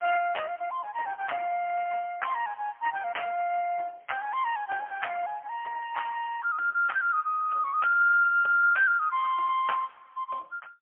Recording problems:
phone line; 450 Hz to 3.2 kHz, AMR-NB, then MP3

